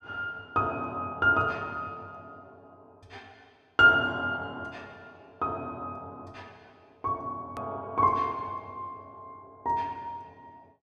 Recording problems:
edit click; at 7.5 s

